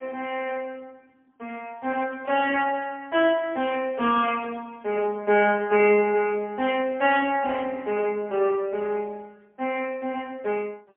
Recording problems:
phone line; 300 Hz to 3.3 kHz, AMR-NB, then MP3

